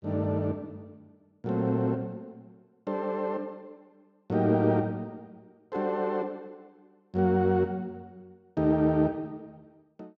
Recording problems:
none

